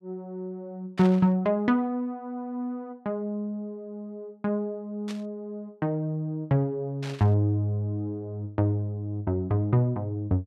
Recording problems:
burst of static; at 1 s, at 5 s and at 7 s; peak -8 dB vs average level

